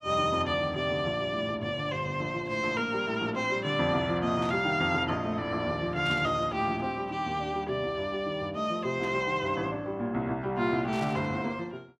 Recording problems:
static burst; 4 times, first at 4.5 s; peak -10 dB vs average level

